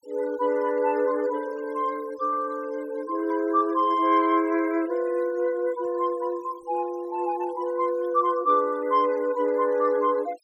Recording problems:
noise reduction artefacts; signal-to-artefact ratio 23 dB

